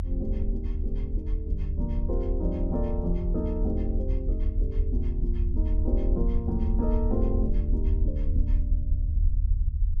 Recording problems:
rumble; below 76 Hz, SNR -5 dB

